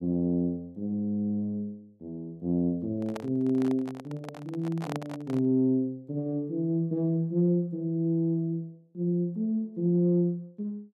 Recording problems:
microphone handling noise; from 3 to 5.5 s; peak -4 dB vs average level

